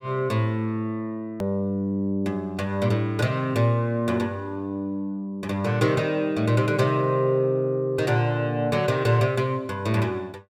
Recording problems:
hard cut with a click; at 1.5 s

